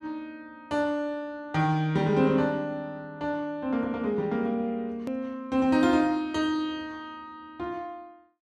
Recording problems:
click at an edit; at 5 s

